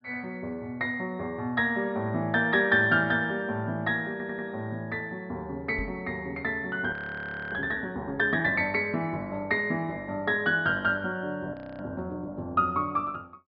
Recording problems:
treble cut off; nothing above 5 kHz
stutter; at 4 s
microphone thump; at 6 s; peak -4 dB vs average level
audio freezing; at 7 s for 0.5 s and at 12 s

